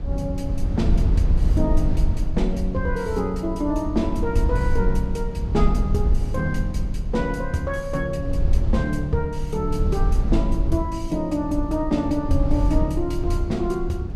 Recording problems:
low-frequency rumble; below 74 Hz, SNR 0 dB

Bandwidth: 14.5 kHz